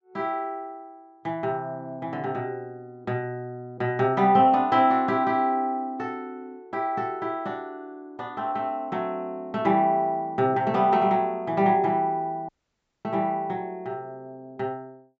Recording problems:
low-pass filter; nothing above 7.6 kHz
dropout; at 12 s for 0.5 s

